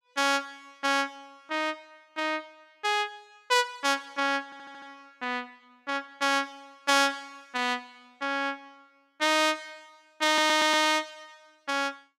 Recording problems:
audio stuttering; at 4.5 s and at 10 s

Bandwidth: 16 kHz